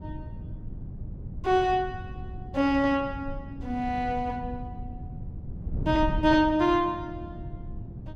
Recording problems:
wind on the microphone; below 140 Hz, SNR 11 dB

